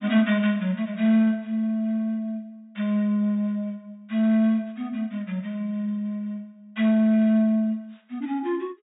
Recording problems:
low-pass filter; nothing above 4 kHz

